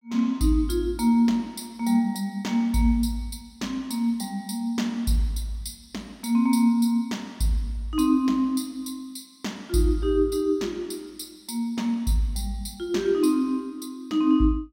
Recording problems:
none

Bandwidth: 16 kHz